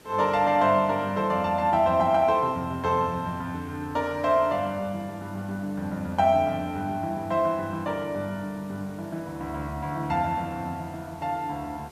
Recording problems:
background hiss; slope -4 dB per octave, SNR 25 dB

